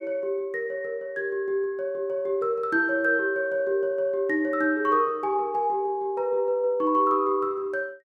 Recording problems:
none

